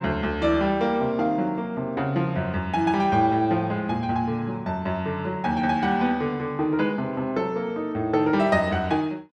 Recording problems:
none

